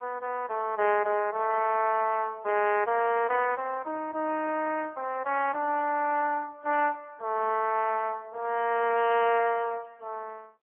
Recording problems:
telephone audio; 300 Hz to 3.2 kHz, AMR-NB

